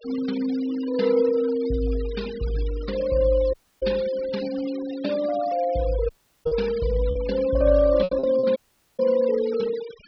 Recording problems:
treble cut off; nothing above 5.5 kHz
noise reduction artefacts; signal-to-artefact ratio 18 dB
packet loss; 3% of the sound replaced, filled with repeated pitch periods
dropout; at 3.5 s, at 6 s and at 8.5 s

